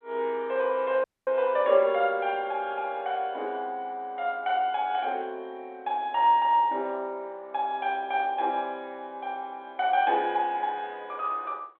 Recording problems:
telephone audio; 340 Hz to 3.8 kHz, G.726
audio cutting out; at 1 s

